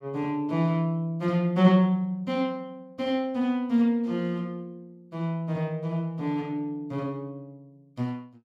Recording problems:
none

